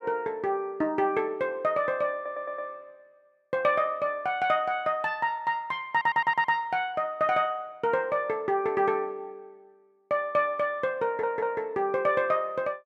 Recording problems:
audio stuttering; at 2 s, at 6 s and at 11 s

